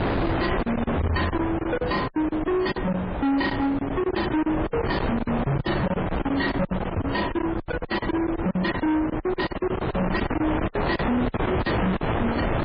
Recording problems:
codec artefacts; MP3, log-spectral distance 3 dB, nothing above 4.5 kHz
distorted audio; soft clipping, signal-to-distortion ratio 7 dB
wind on the microphone; below 880 Hz, SNR 2 dB
lost packets; 16% of the sound replaced, filled with silence

